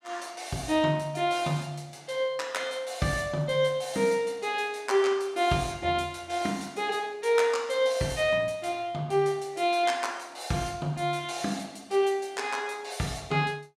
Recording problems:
none

